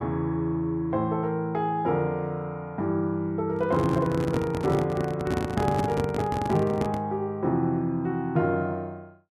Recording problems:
microphone handling noise; from 3.5 to 7 s; peak +2 dB vs average level

